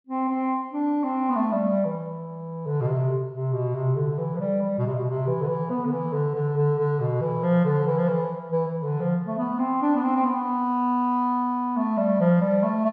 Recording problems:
none

